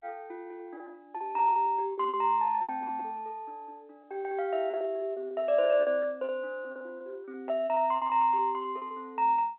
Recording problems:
phone line; 280 Hz to 3.3 kHz, G.711
lost packets; 14% of the sound replaced, filled with repeated pitch periods

